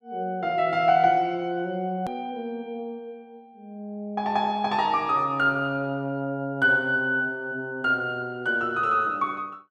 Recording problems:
click at an edit; at 2 s

